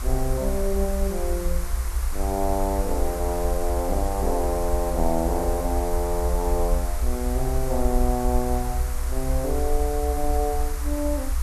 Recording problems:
hiss; SNR 9 dB
rumble; below 62 Hz, SNR 2 dB

